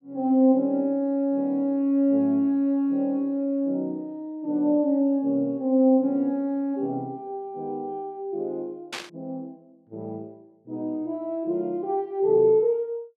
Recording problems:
burst of static; at 9 s; peak -4 dB vs average level

